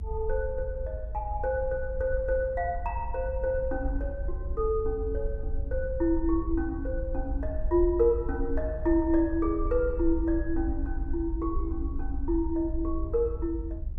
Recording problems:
low-frequency rumble; below 64 Hz, SNR 5 dB

